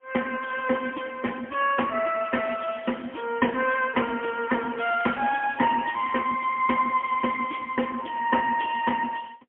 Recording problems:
phone line; 190 Hz to 3.3 kHz, AMR-NB, then MP3

